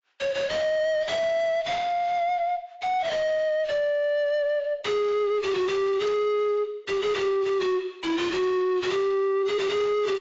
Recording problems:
lossy compression; AAC, log-spectral distance 2 dB, nothing above 7.3 kHz
distorted audio; soft clipping, signal-to-distortion ratio 7 dB

